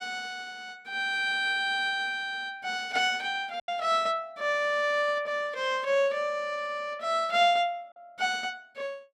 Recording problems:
lost packets; 1.4% of the sound replaced, filled with silence

